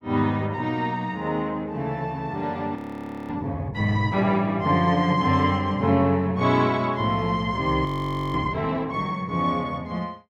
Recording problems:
frozen audio; at 3 s for 0.5 s and at 8 s

